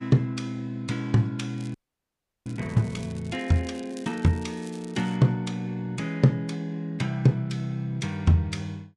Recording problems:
lossy codec; Vorbis, log-spectral distance 2 dB, nothing above 10.4 kHz
crackling; from 1.5 to 5 s; loose cable, SNR 23 dB
frozen audio; at 1.5 s for 0.5 s

